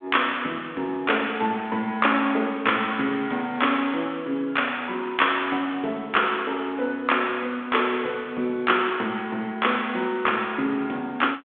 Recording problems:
telephone audio; 190 Hz to 3.6 kHz, G.726

